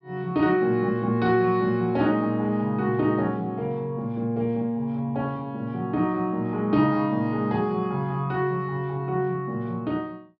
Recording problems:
low-pass filter; nothing above 5.5 kHz

